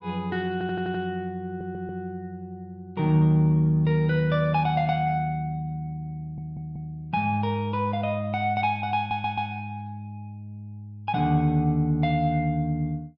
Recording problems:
audio stuttering; 4 times, first at 0.5 s

